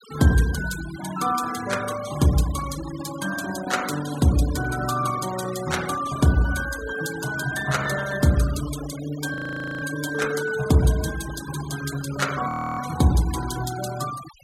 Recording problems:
denoising artefacts; signal-to-artefact ratio 13 dB
audio freezing; at 9.5 s and at 12 s

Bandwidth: 16 kHz